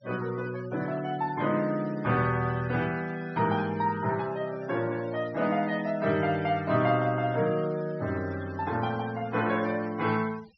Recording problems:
low-pass filter; nothing above 5.9 kHz
noise reduction artefacts; signal-to-artefact ratio 20 dB

